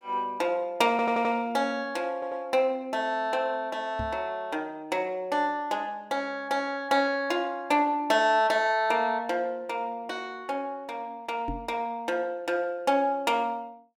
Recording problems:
stutter; at 1 s and at 2 s
microphone thump; at 4 s and at 11 s; peak -3 dB vs average level

